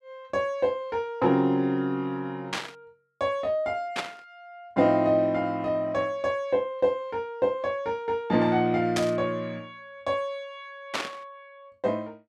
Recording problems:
static burst; 4 times, first at 2.5 s; peak +2 dB vs average level

